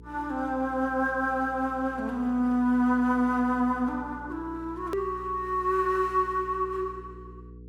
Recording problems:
electrical hum; 60 Hz, harmonics up to 480 Hz, SNR 19 dB
edit click; at 5 s

